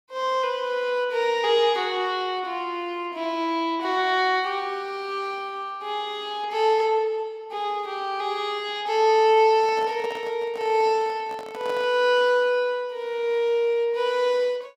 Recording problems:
microphone handling noise; from 9.5 to 12 s; peak -9 dB vs average level

